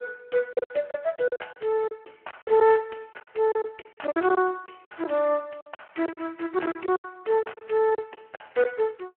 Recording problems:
phone line; 300 Hz to 3.1 kHz, Speex
packet loss; 15% of the sound replaced, filled with silence

